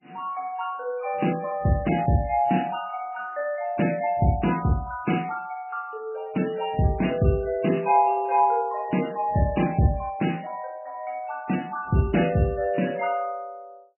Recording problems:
lossy codec; MP3, log-spectral distance 4 dB, nothing above 2.9 kHz

